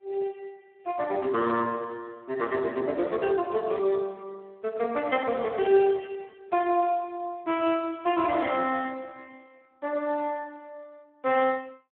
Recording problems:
phone line; 150 Hz to 3.5 kHz, Speex

